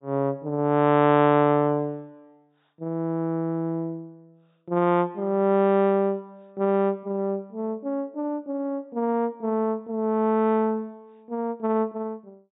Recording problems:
low-pass filter; nothing above 4 kHz

